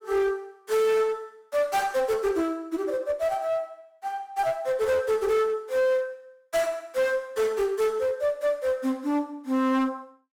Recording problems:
distortion; hard clipping, uneven, signal-to-distortion ratio 9 dB

